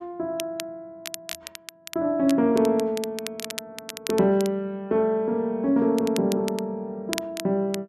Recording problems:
crackle; vinyl, SNR 13 dB

